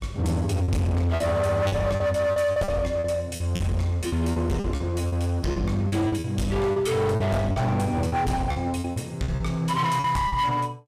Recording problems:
distorted audio; hard clipping, uneven, signal-to-distortion ratio 8 dB
packet loss; 11% of the sound replaced, filled with repeated pitch periods

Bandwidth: 15 kHz